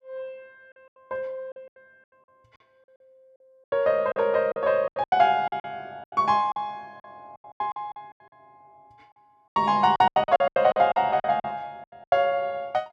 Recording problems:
lost packets; 17% of the sound replaced, filled with silence

